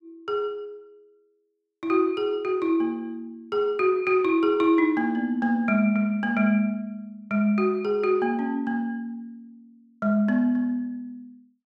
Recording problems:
none

